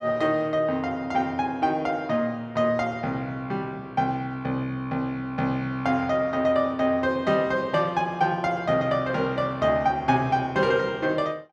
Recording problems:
none

